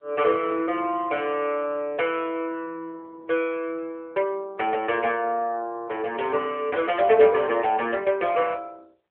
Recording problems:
phone line; 300 Hz to 3.3 kHz, AMR-NB

